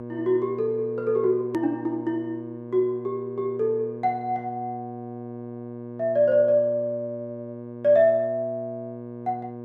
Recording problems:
mains hum; 60 Hz, harmonics up to 1.1 kHz, SNR 12 dB
edit click; at 1.5 s

